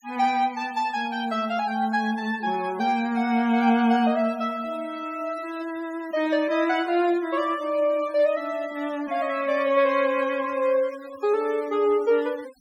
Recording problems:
denoising artefacts; signal-to-artefact ratio 22 dB

